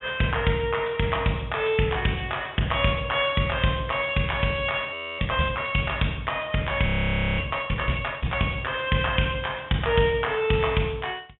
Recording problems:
low-pass filter; nothing above 3.5 kHz
audio freezing; at 5 s and at 7 s for 0.5 s

